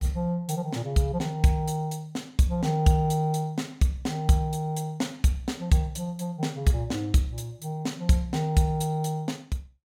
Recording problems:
none

